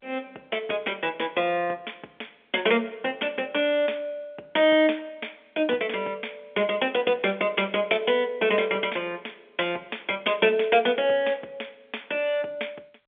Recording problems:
telephone audio; 320 Hz to 3.4 kHz, G.711

